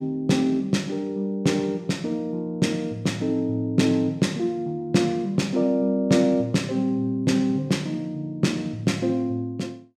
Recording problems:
none

